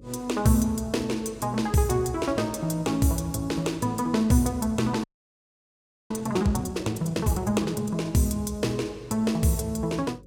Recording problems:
mains hum; 50 Hz, harmonics up to 550 Hz, SNR 24 dB
frozen audio; at 5 s for 1 s

